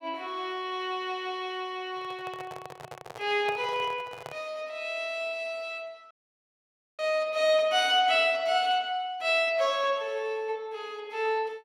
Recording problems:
microphone handling noise; from 2 to 4.5 s; peak -6 dB vs average level
dropout; at 6 s for 1 s

